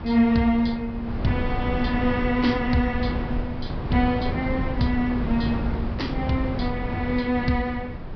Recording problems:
treble cut off; nothing above 5.5 kHz
wind on the microphone; below 250 Hz, SNR 5 dB

